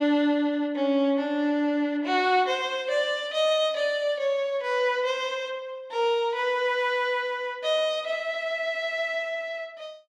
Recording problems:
none

